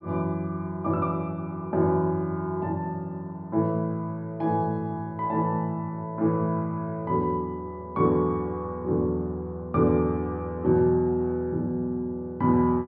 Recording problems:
low-pass filter; nothing above 5.5 kHz

